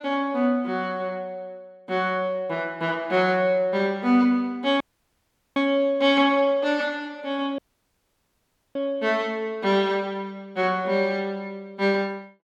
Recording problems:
dropout; at 5 s for 1 s and at 7.5 s for 1 s

